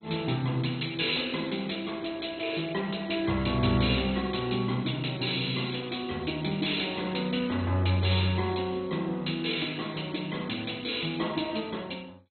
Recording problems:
treble missing; nothing above 4.1 kHz
lossy codec; MP2, log-spectral distance 8 dB

